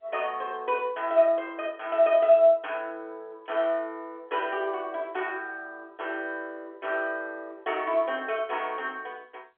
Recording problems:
telephone audio; 320 Hz to 3.6 kHz, G.711

